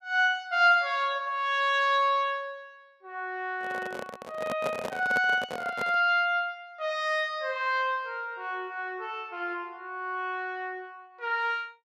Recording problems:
handling noise; from 3.5 to 6 s; peak -1 dB vs average level

